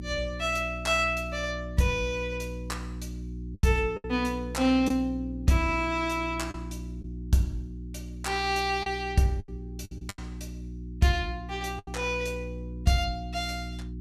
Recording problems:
electrical hum; 60 Hz, harmonics up to 360 Hz, SNR 10 dB
packet loss; 4% of the sound replaced, filled with the last packet

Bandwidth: 14.5 kHz